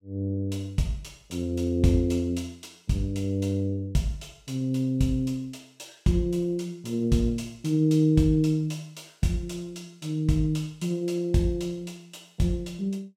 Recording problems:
none

